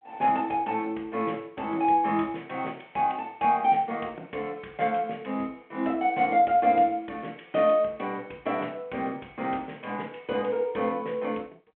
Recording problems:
telephone audio; 300 Hz to 3.4 kHz, G.726

